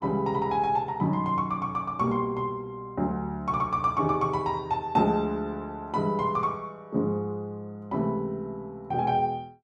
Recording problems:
none

